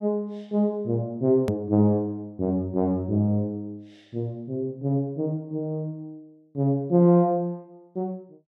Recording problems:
click at an edit; at 1.5 s

